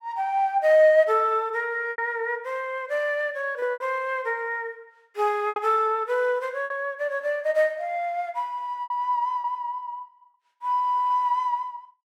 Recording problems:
lost packets; 4% of the sound replaced, filled with repeated pitch periods

